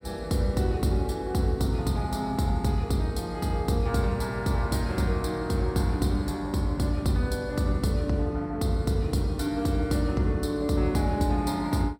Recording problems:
none

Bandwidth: 16.5 kHz